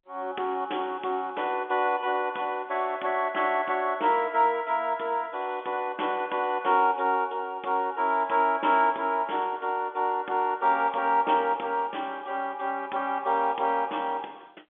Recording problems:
phone line; 280 Hz to 3.4 kHz, G.711

